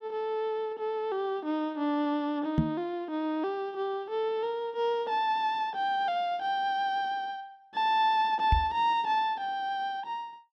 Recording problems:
microphone bump; at 2.5 s and at 8.5 s; peak +8 dB vs average level

